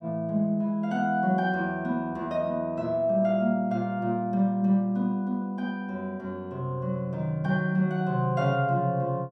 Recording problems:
none

